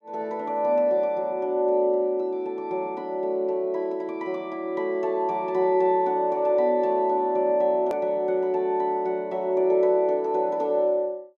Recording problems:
hard cut with a click; at 8 s

